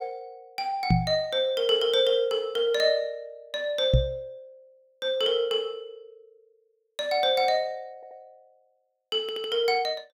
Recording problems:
knock on the microphone; at 1 s and at 4 s; peak +7 dB vs average level
stutter; at 8 s and at 9 s

